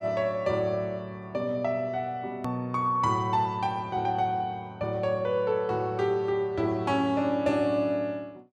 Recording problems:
hard cut with a click; at 2.5 s

